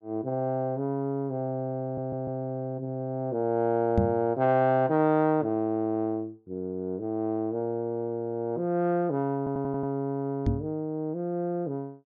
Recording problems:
stutter; at 2 s and at 9.5 s
microphone thump; at 4 s and at 10 s; peak +7 dB vs average level

